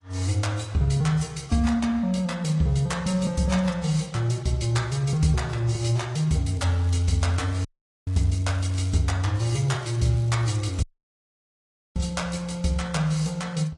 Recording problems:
lossy codec; AAC, log-spectral distance 3 dB, nothing above 10.4 kHz
crackling; from 6.5 to 9 s and from 9.5 to 11 s; loose cable, SNR 27 dB
audio cutting out; at 7.5 s and at 11 s for 1 s

